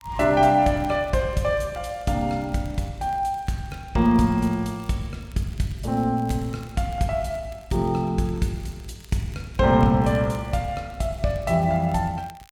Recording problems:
crackling; vinyl, SNR 30 dB

